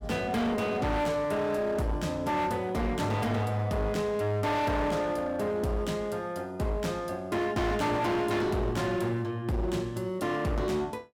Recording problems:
distortion; hard clipping, uneven, signal-to-distortion ratio 7 dB

